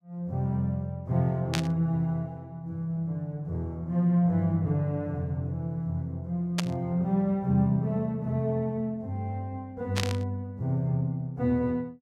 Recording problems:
burst of static; at 1.5 s, at 6.5 s and at 10 s; peak +3 dB vs average level

